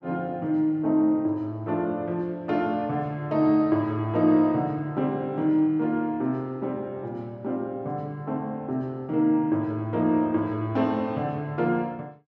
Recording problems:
low-pass filter; nothing above 8 kHz

